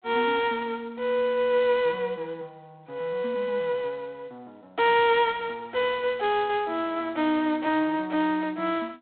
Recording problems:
telephone audio; 220 Hz to 3.7 kHz, G.726

